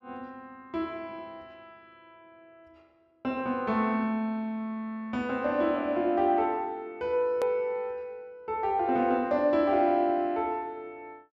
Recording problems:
click at an edit; at 7.5 s

